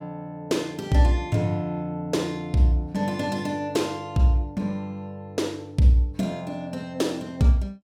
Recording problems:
none

